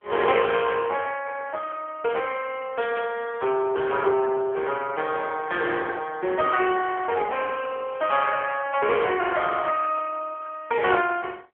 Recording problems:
telephone audio; 320 Hz to 2.8 kHz, AMR-NB
burst of static; at 3 s, at 6.5 s and at 9 s; peak -9 dB vs average level

